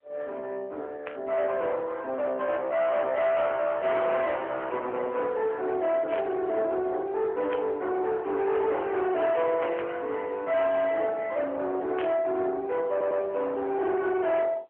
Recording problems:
phone line; 320 Hz to 3.6 kHz, AMR-NB
distortion; soft clipping, signal-to-distortion ratio 7 dB
static burst; 5 times, first at 1 s; peak -5 dB vs average level
audio stuttering; at 13 s

